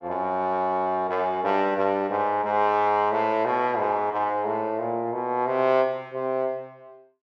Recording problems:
none

